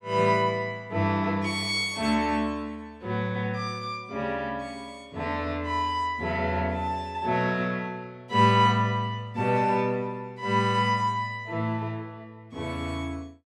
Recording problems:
none

